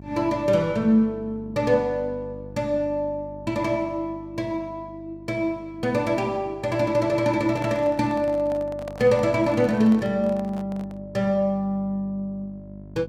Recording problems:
electrical hum; 50 Hz, harmonics up to 750 Hz, SNR 19 dB
handling noise; from 7.5 to 11 s; peak -9 dB vs average level

